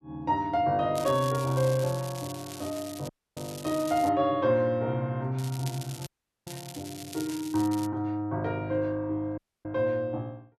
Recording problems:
crackle; from 1 to 4 s and from 5.5 to 8 s; loose cable, SNR 15 dB
dropout; at 3 s, at 6 s and at 9.5 s

